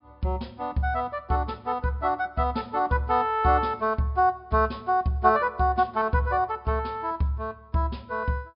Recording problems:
treble cut off; nothing above 5.5 kHz

